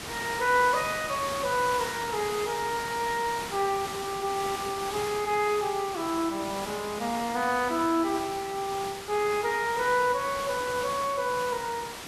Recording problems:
hiss; slope -2 dB per octave, SNR 8 dB

